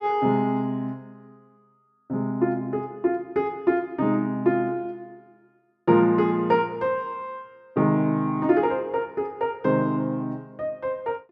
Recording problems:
none

